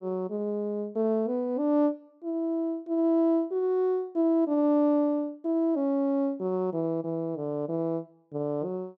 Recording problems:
none

